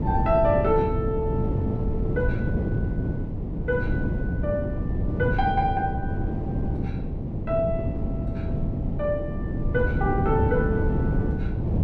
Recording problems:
wind on the microphone; below 220 Hz, SNR 0 dB

